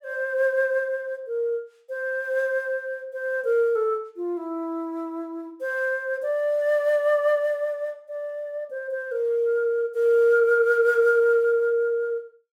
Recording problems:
none

